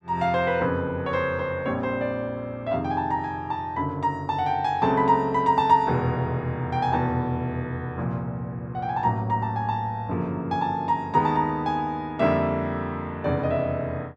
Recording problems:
none

